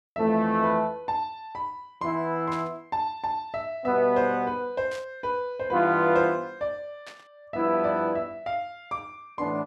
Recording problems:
static burst; at 2.5 s, at 5 s and at 7 s; peak -11 dB vs average level

